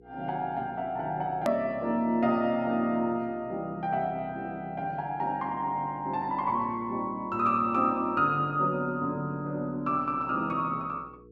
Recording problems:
mains hum; 60 Hz, harmonics up to 480 Hz, SNR 24 dB
click at an edit; at 1.5 s

